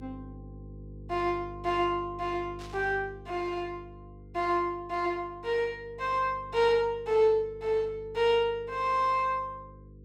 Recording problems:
hum; 50 Hz, harmonics up to 500 Hz, SNR 19 dB
static burst; at 2.5 s; peak -15 dB vs average level

